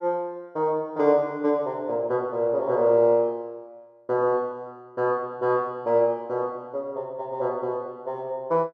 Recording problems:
none

